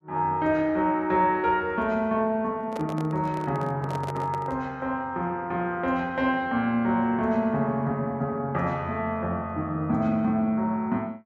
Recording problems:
microphone handling noise; from 2.5 to 4.5 s; peak -5 dB vs average level

